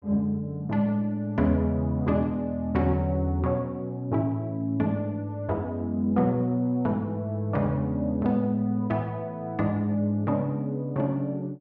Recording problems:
none

